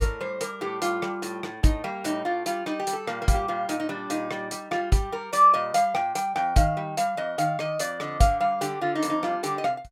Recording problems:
none

